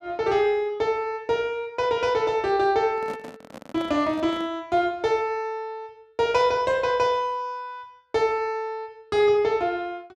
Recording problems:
handling noise; from 3 to 4.5 s; peak -10 dB vs average level

